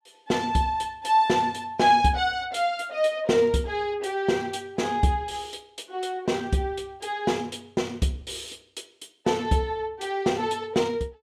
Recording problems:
none

